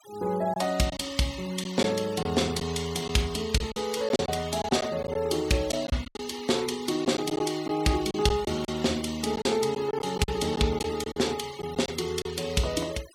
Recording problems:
denoising artefacts; signal-to-artefact ratio 17 dB
lost packets; 7% of the sound replaced, filled with silence

